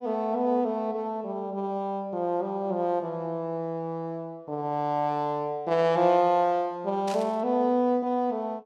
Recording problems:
burst of static; at 7 s; peak -8 dB vs average level

